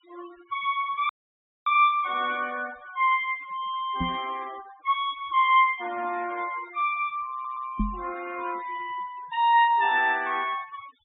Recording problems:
treble cut off; nothing above 4 kHz
denoising artefacts; signal-to-artefact ratio 21 dB
dropout; at 1 s for 0.5 s
microphone bump; at 4 s and at 8 s; peak +2 dB vs average level
audio stuttering; at 7.5 s

